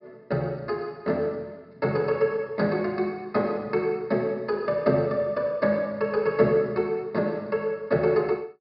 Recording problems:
treble cut off; nothing above 5.5 kHz

